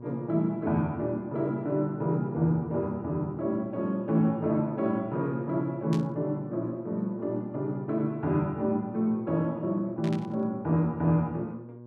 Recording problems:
hum; 60 Hz, harmonics up to 1.1 kHz, SNR 16 dB
static burst; at 6 s and at 10 s; peak -9 dB vs average level

